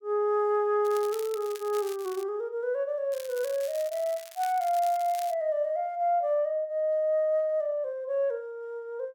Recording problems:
crackle; from 1 to 2 s and from 3 to 5.5 s; loose cable, SNR 17 dB

